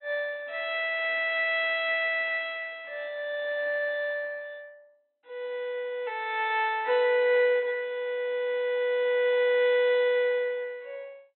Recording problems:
treble cut off; nothing above 3.6 kHz
lossy codec; MP2, log-spectral distance 2 dB

